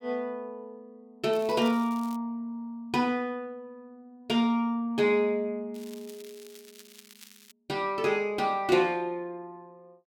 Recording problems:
crackle; at 1.5 s and from 5.5 to 7.5 s; loose cable, SNR 22 dB

